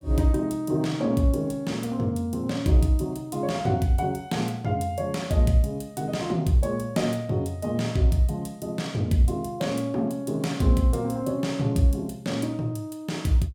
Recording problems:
none

